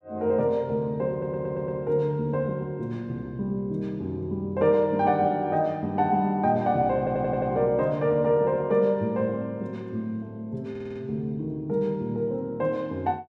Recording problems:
stutter; at 1 s, at 7 s and at 11 s

